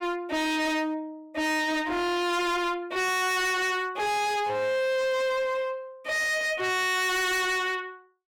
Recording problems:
distortion; hard clipping, uneven, signal-to-distortion ratio 5 dB

